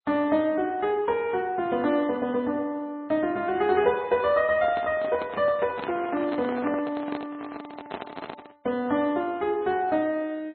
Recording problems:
lossy codec; MP2, then MP3, log-spectral distance 3 dB, nothing above 3.6 kHz
microphone handling noise; from 4.5 to 8.5 s; peak -5 dB vs average level

